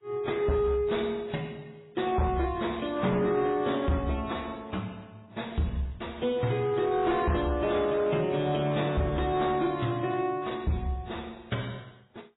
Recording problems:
lossy compression; MP3, then AAC, log-spectral distance 5 dB, nothing above 3.8 kHz
distorted audio; hard clipping, signal-to-distortion ratio 11 dB

